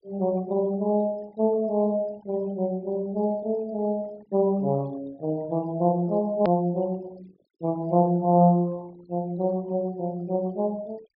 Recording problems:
treble cut off; nothing above 5.5 kHz
denoising artefacts; signal-to-artefact ratio 28 dB
click at an edit; at 6.5 s

